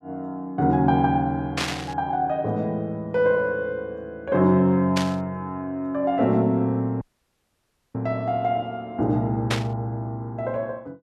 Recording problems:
static burst; at 1.5 s, at 5 s and at 9.5 s; peak +2 dB vs average level
audio cutting out; at 7 s for 1 s

